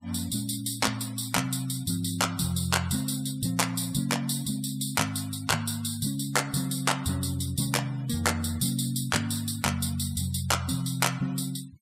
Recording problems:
denoising artefacts; signal-to-artefact ratio 21 dB

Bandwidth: 15.5 kHz